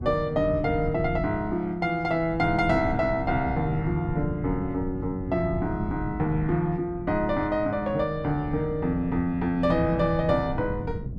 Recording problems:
wind noise; below 170 Hz, SNR 9 dB

